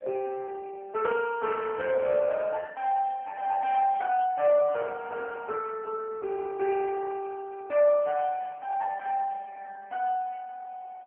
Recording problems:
telephone audio; 110 Hz to 2.2 kHz, AMR-NB

